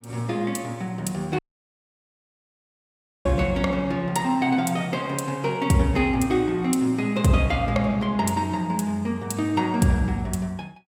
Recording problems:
dropout; at 1.5 s for 2 s

